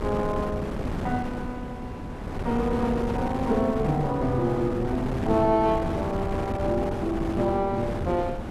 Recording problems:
wind on the microphone; below 490 Hz, SNR 5 dB

